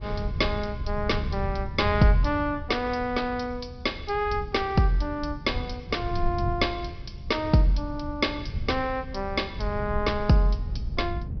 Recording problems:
treble missing; nothing above 5.5 kHz
wind on the microphone; below 100 Hz, SNR 8 dB

